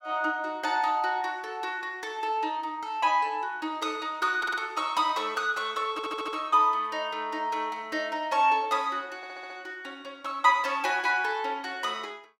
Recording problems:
audio stuttering; at 4.5 s, at 6 s and at 9 s

